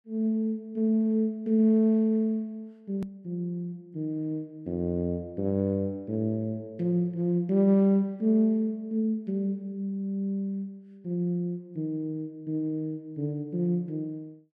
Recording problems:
click at an edit; at 3 s

